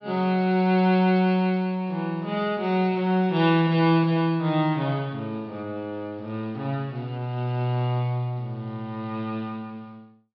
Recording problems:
treble missing; nothing above 5.5 kHz

